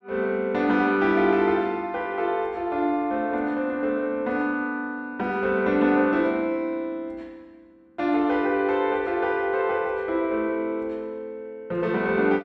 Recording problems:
none

